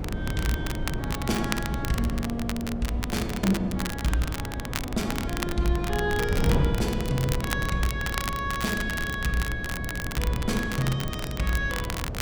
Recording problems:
hum; 60 Hz, harmonics up to 720 Hz, SNR 11 dB
wind on the microphone; below 210 Hz, SNR 3 dB
crackling; vinyl, SNR 6 dB

